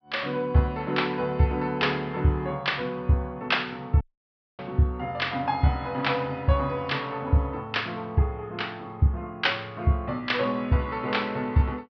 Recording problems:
treble cut off; nothing above 5.5 kHz
audio cutting out; at 4 s for 0.5 s

